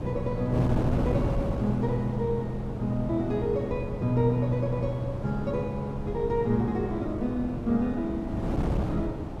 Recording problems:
wind noise; below 350 Hz, SNR 4 dB

